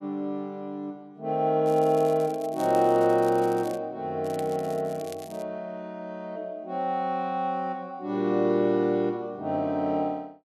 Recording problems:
crackle; from 1.5 to 4 s and from 4 to 5.5 s; loose cable, SNR 22 dB

